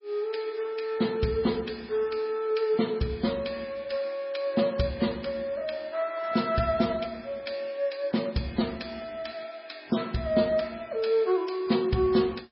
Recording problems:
codec artefacts; MP3, log-spectral distance 4 dB, nothing above 5.2 kHz

